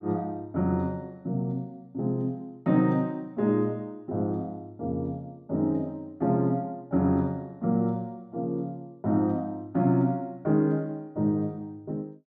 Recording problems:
none

